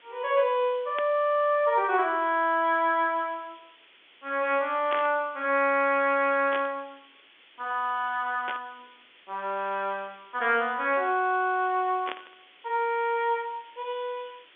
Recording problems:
telephone audio; 240 Hz to 3.5 kHz, G.711
background hiss; SNR 27 dB
burst of static; 5 times, first at 1 s; peak -4 dB vs average level

